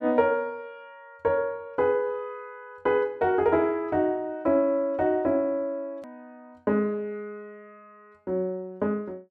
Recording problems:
edit click; at 6 s

